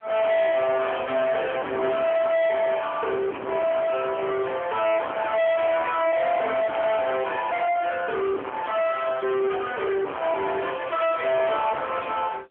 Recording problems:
telephone audio; 280 Hz to 3.4 kHz, AMR-NB
distortion; soft clipping, signal-to-distortion ratio 5 dB

